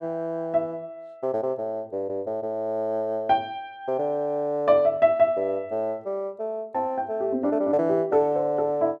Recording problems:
none

